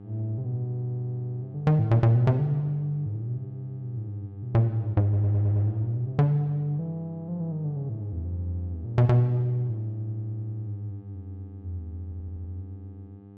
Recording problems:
electrical hum; 50 Hz, harmonics up to 900 Hz, SNR 19 dB
audio stuttering; at 5 s and at 12 s

